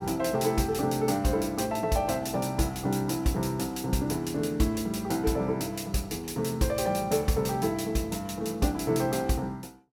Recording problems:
none

